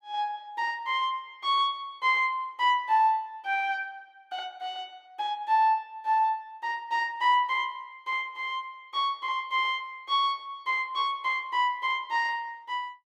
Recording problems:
none

